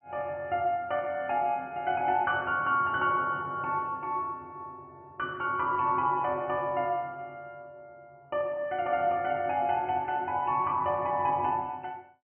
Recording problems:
treble missing; nothing above 3.1 kHz

